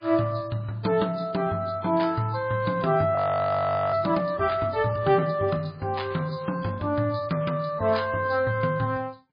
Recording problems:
lossy compression; MP3, log-spectral distance 3 dB, nothing above 4.2 kHz
frozen audio; at 3 s for 1 s

